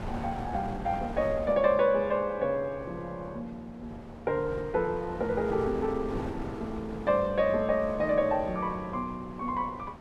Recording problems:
wind noise; below 690 Hz, SNR 13 dB

